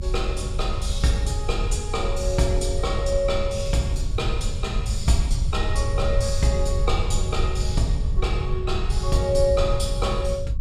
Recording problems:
rumble; below 80 Hz, SNR 1 dB

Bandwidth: 14.5 kHz